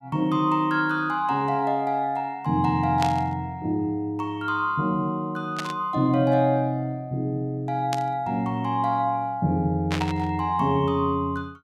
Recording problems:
static burst; 4 times, first at 3 s; peak -1 dB vs average level

